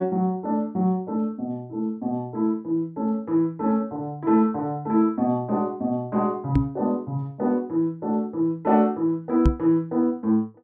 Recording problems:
microphone bump; at 6.5 s and at 9.5 s; peak +7 dB vs average level

